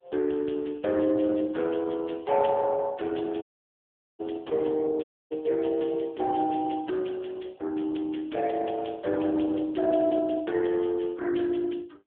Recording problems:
phone line; 260 Hz to 3.6 kHz, AMR-NB
dropout; at 3.5 s for 1 s and at 5 s

